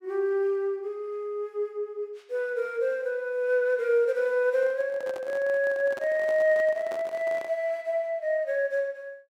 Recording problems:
microphone handling noise; from 4.5 to 7.5 s; peak -8 dB vs average level

